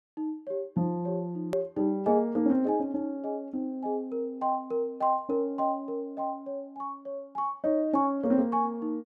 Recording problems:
hard cut with a click; at 1.5 s

